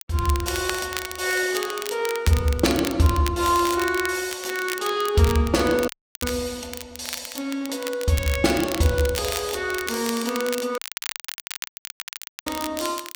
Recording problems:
crackle; vinyl, SNR 10 dB
audio cutting out; at 6 s and at 11 s for 1.5 s

